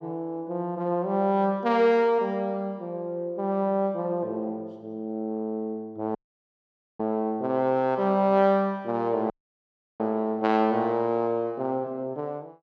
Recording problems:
audio cutting out; at 6 s for 1 s and at 9.5 s for 0.5 s

